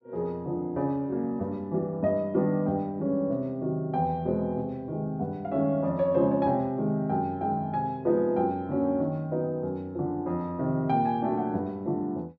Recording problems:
none

